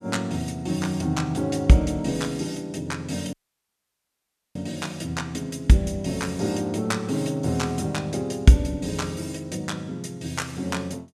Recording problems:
audio cutting out; at 3.5 s for 1 s

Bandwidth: 14 kHz